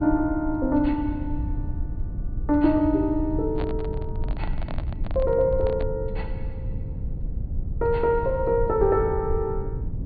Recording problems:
treble cut off; nothing above 4.7 kHz
low-frequency rumble; below 94 Hz, SNR 7 dB
handling noise; from 3.5 to 6 s; peak -7 dB vs average level

